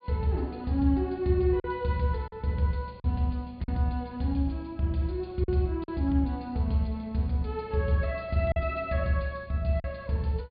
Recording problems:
low-pass filter; nothing above 4.8 kHz
lost packets; 3% of the sound replaced, filled with silence

